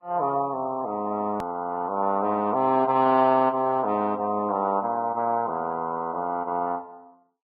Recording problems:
low-pass filter; nothing above 5 kHz
lossy compression; Vorbis, log-spectral distance 2 dB
edit click; at 1.5 s

